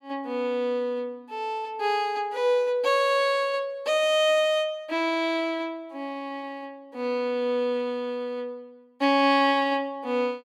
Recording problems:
none

